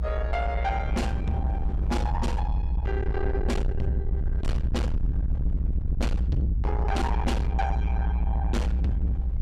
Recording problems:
distortion; soft clipping, signal-to-distortion ratio 7 dB
low-frequency rumble; below 70 Hz, SNR -3 dB
wind on the microphone; below 190 Hz, SNR 8 dB

